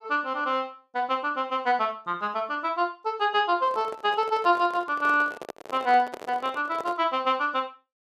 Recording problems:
microphone handling noise; from 3.5 to 7 s; peak -6 dB vs average level

